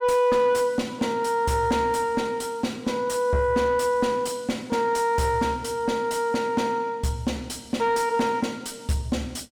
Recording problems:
distorted audio; soft clipping, signal-to-distortion ratio 11 dB

